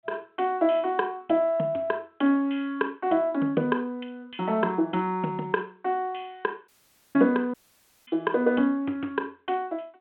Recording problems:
telephone audio; 190 Hz to 3.4 kHz, G.726
audio cutting out; at 6.5 s and at 7.5 s for 0.5 s

